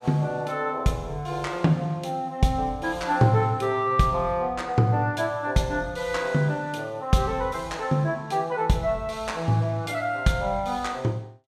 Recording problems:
none

